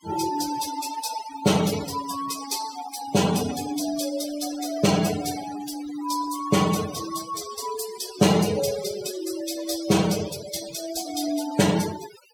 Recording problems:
noise reduction artefacts; signal-to-artefact ratio 11 dB

